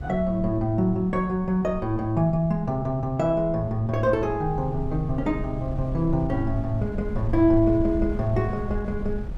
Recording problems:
wind noise; below 84 Hz, SNR 11 dB

